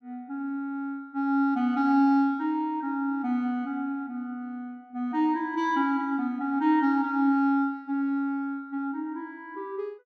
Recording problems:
none

